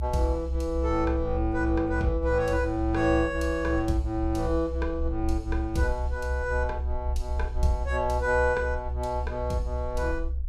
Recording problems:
low-frequency rumble; below 68 Hz, strongest tone 64 Hz, SNR 4 dB

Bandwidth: 15 kHz